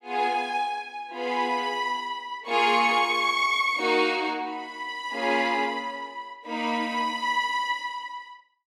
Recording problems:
none

